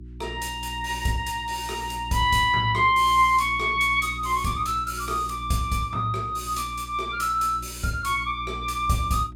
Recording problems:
electrical hum; 60 Hz, harmonics up to 360 Hz, SNR 15 dB

